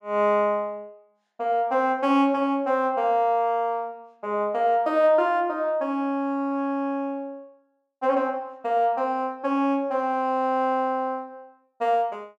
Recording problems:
none

